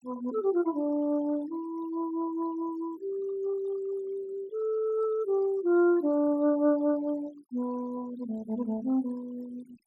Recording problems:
denoising artefacts; signal-to-artefact ratio 23 dB

